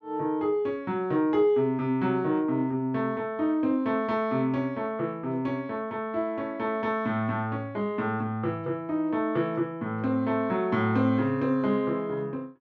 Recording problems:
none

